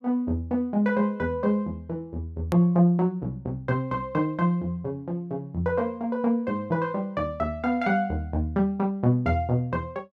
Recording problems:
edit click; at 2.5 s

